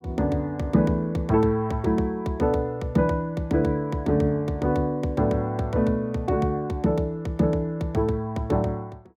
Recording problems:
none

